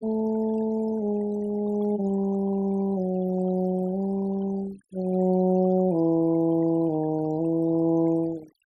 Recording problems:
noise reduction artefacts; signal-to-artefact ratio 21 dB

